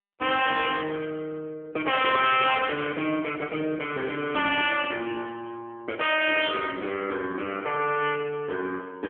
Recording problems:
telephone audio; 260 Hz to 3.4 kHz, AMR-NB

